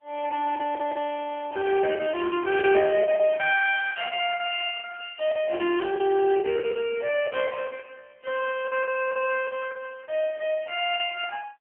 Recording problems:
phone line; 300 Hz to 3.1 kHz, AMR-NB
packet loss; 11% of the sound replaced, filled with the last packet

